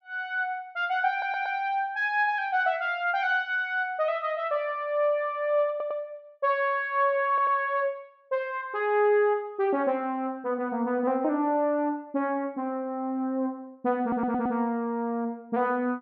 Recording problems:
audio stuttering; 4 times, first at 1 s

